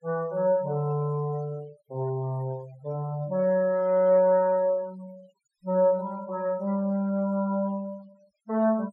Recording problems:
denoising artefacts; signal-to-artefact ratio 28 dB

